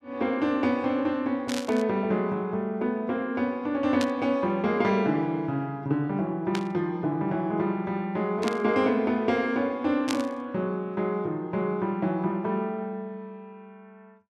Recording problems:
static burst; 5 times, first at 1.5 s; peak 0 dB vs average level

